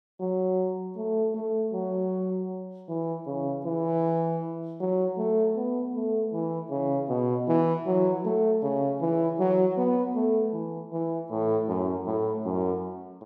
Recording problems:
none

